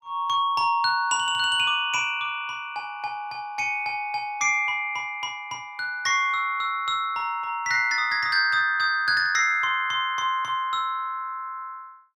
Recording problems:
none

